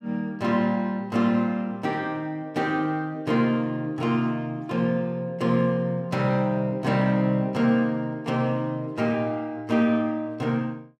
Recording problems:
none

